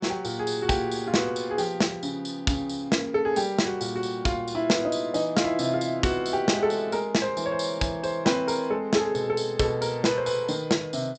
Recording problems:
treble missing; nothing above 8 kHz

